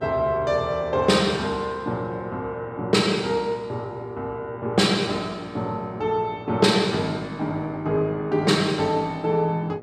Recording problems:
hum; 60 Hz, harmonics up to 1.3 kHz, SNR 22 dB

